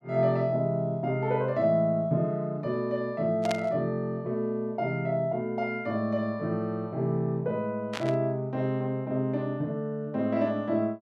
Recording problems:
static burst; at 3.5 s and at 8 s; peak -2 dB vs average level

